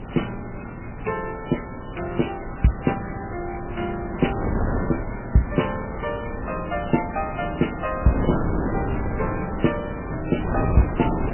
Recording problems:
codec artefacts; MP3, log-spectral distance 12 dB, nothing above 3 kHz
hiss; SNR 28 dB
wind on the microphone; below 430 Hz, SNR 4 dB

